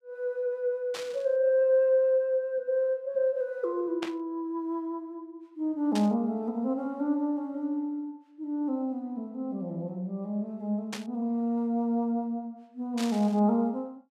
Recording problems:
burst of static; 5 times, first at 1 s; peak -4 dB vs average level

